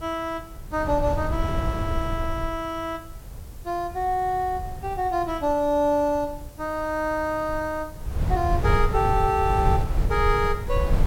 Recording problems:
background hiss; slope 0 dB per octave, SNR 25 dB
wind on the microphone; below 110 Hz, SNR 3 dB

